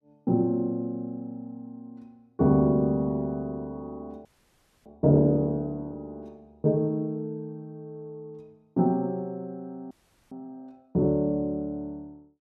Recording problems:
audio freezing; at 4.5 s for 0.5 s and at 10 s

